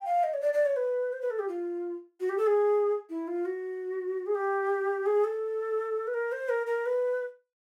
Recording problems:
none

